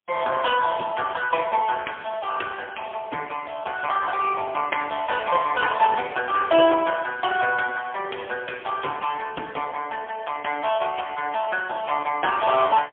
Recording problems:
phone line; 280 Hz to 3.3 kHz, AMR-NB, then MP3

